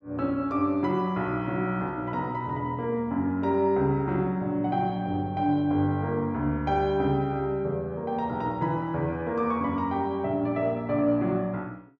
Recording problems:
none

